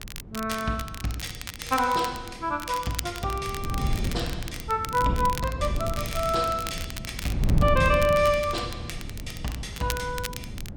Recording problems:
wind noise; below 160 Hz, SNR 5 dB
crackling; vinyl, SNR 11 dB

